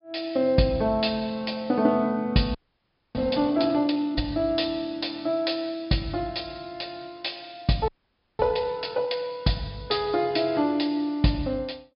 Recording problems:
treble missing; nothing above 5.5 kHz
frozen audio; at 2.5 s for 0.5 s and at 8 s for 0.5 s

